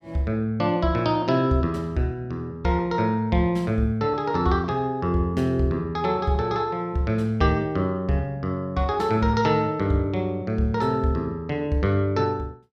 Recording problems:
none

